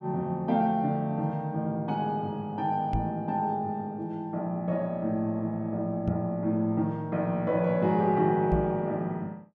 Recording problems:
knock on the microphone; at 3 s, at 6 s and at 8.5 s; peak +2 dB vs average level

